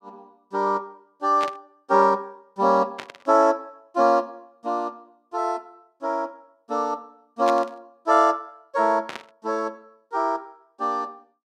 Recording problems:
static burst; 4 times, first at 1.5 s; peak -5 dB vs average level

